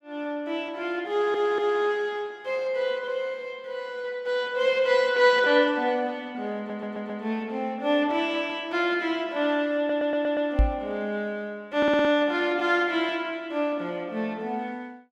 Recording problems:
stutter; 4 times, first at 1 s
microphone thump; at 11 s; peak +7 dB vs average level

